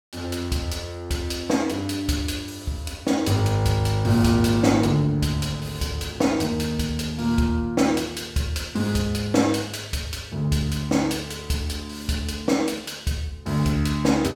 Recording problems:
none

